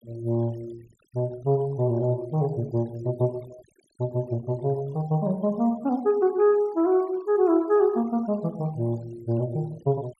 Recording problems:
noise reduction artefacts; signal-to-artefact ratio 26 dB

